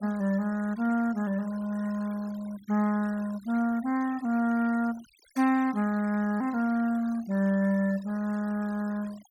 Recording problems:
denoising artefacts; signal-to-artefact ratio 22 dB

